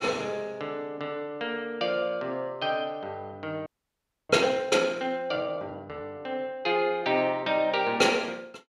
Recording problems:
frozen audio; at 3.5 s for 0.5 s

